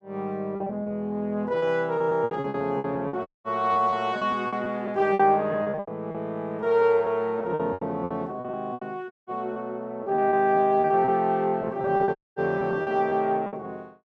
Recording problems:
packet loss; 14% of the sound replaced, filled with repeated pitch periods
audio cutting out; at 3.5 s, at 9 s and at 12 s

